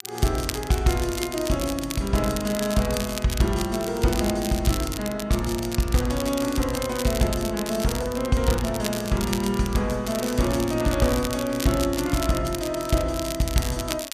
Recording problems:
crackle; vinyl, SNR 9 dB

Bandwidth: 14.5 kHz